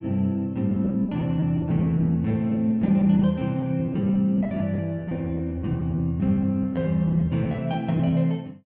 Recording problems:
lost packets; 11% of the sound replaced, filled with repeated pitch periods

